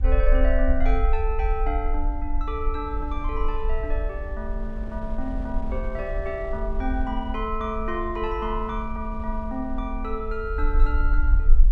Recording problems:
low-frequency rumble; below 50 Hz, strongest tone 22 Hz, SNR -1 dB
wind noise; below 310 Hz, SNR 14 dB

